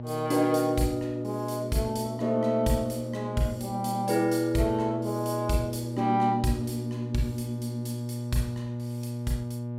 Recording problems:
electrical hum; 60 Hz, harmonics up to 840 Hz, SNR 7 dB

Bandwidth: 16 kHz